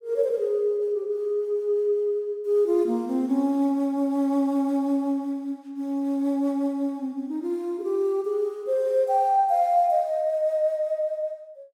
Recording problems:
none

